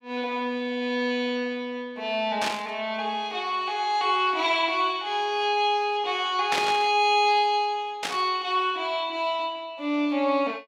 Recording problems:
static burst; at 2.5 s, at 6.5 s and at 8 s; peak +2 dB vs average level

